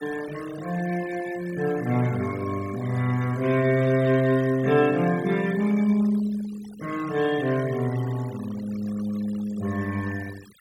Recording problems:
denoising artefacts; signal-to-artefact ratio 18 dB

